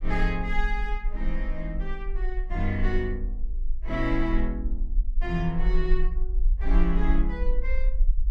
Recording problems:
low-frequency rumble; below 40 Hz, strongest tone 20 Hz, SNR -1 dB

